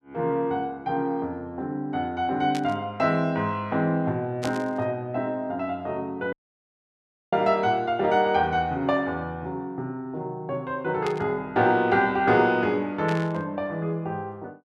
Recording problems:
burst of static; 4 times, first at 2.5 s; peak -4 dB vs average level
dropout; at 6.5 s for 1 s

